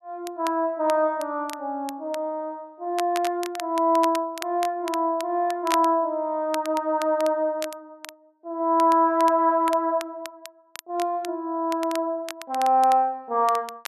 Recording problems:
crackling; vinyl, SNR 17 dB

